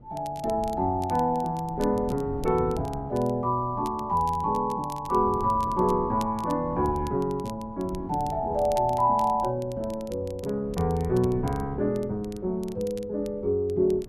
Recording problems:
wind noise; below 250 Hz, SNR 15 dB
crackling; vinyl, SNR 23 dB

